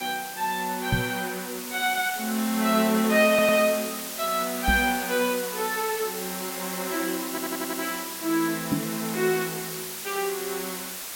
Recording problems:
hiss; slope 0 dB per octave, SNR 7 dB
microphone bump; at 1 s, at 4.5 s and at 8.5 s; peak +6 dB vs average level
stutter; at 3.5 s and at 7.5 s

